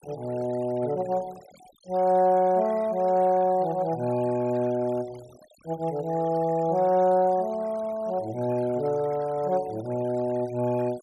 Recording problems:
noise reduction artefacts; signal-to-artefact ratio 23 dB

